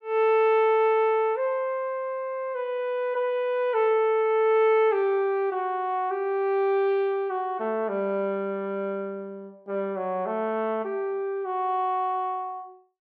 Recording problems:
none

